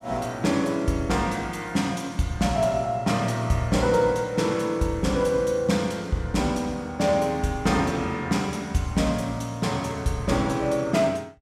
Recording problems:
none

